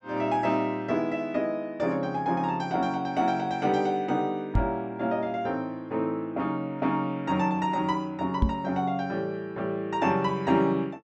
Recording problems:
microphone thump; at 4.5 s and at 8.5 s; peak +7 dB vs average level

